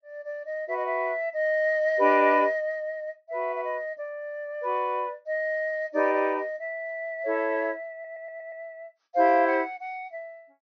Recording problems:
treble cut off; nothing above 6.3 kHz
audio stuttering; at 8 s

